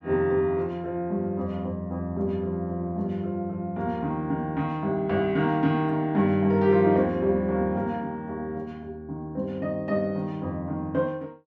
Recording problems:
none

